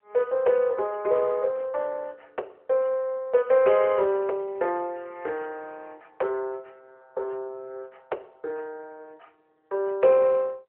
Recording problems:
phone line; 340 Hz to 3.2 kHz, AMR-NB

